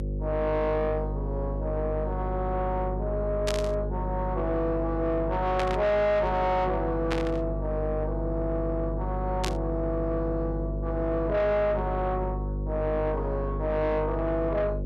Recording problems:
distorted audio; soft clipping, signal-to-distortion ratio 12 dB
hum; 50 Hz, harmonics up to 550 Hz, SNR 4 dB
static burst; 4 times, first at 3.5 s; peak 0 dB vs average level

